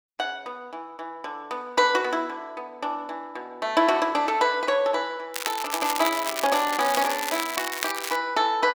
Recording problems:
crackling; from 5.5 to 8 s; loose cable, SNR 5 dB

